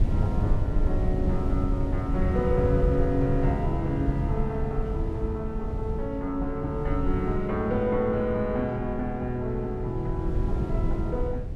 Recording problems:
wind noise; below 110 Hz, SNR 1 dB

